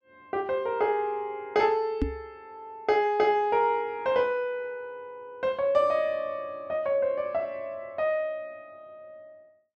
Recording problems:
microphone thump; at 2 s; peak +4 dB vs average level

